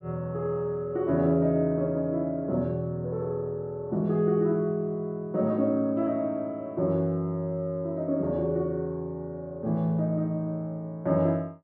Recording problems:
none

